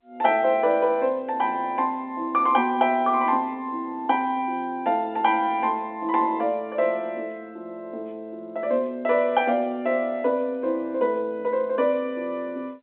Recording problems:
phone line; 190 Hz to 3.6 kHz, G.711

